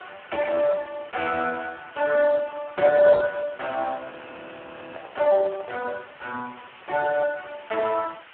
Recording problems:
phone line; 340 Hz to 2.2 kHz, Speex
hiss; SNR 22 dB
microphone handling noise; from 4 to 6 s; peak -12 dB vs average level
frozen audio; at 4 s for 1 s

